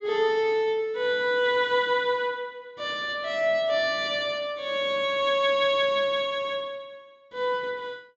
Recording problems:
low-pass filter; nothing above 8 kHz

